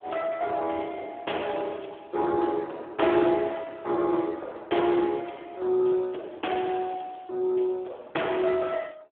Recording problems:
phone line; 280 Hz to 3.5 kHz, Speex

